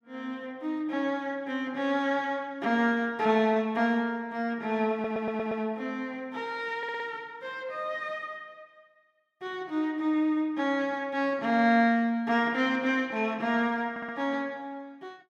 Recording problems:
stutter; at 5 s, at 7 s and at 14 s

